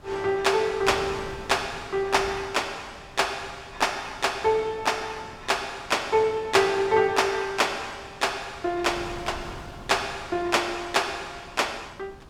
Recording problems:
wind on the microphone; below 740 Hz, SNR 20 dB

